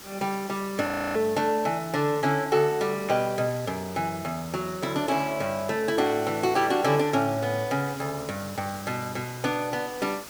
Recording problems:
hiss; slope -2 dB per octave, SNR 15 dB
audio freezing; at 1 s

